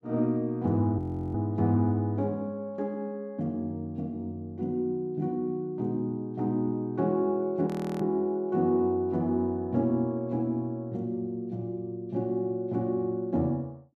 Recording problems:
audio freezing; at 1 s and at 7.5 s

